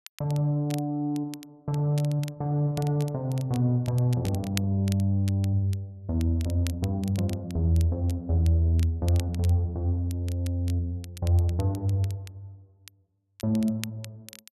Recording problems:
crackle; vinyl, SNR 19 dB

